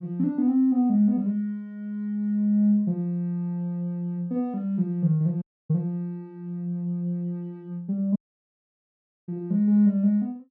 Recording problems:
dropout; at 5.5 s and at 8 s for 1 s

